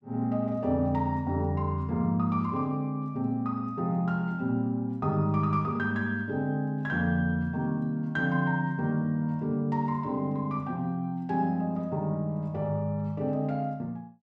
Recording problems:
none

